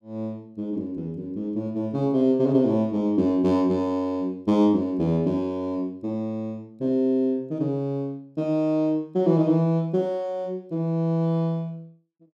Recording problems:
none

